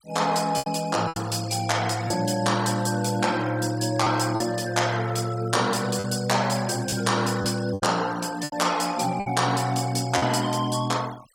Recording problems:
denoising artefacts; signal-to-artefact ratio 18 dB
packet loss; 5% of the sound replaced, filled with repeated pitch periods

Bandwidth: 16.5 kHz